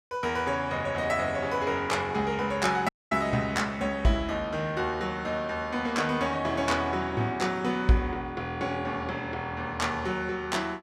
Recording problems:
audio cutting out; at 3 s

